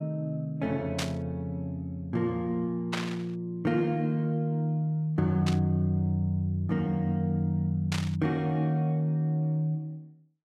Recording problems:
burst of static; 4 times, first at 1 s; peak +1 dB vs average level

